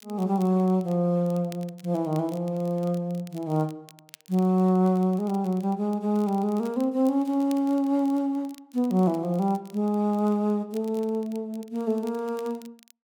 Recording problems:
crackle; vinyl, SNR 27 dB

